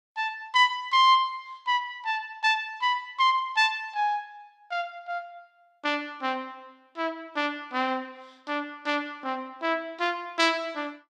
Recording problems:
none

